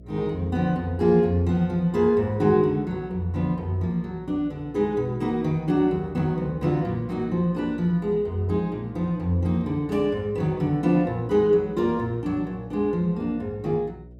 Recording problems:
hum; 60 Hz, harmonics up to 660 Hz, SNR 22 dB

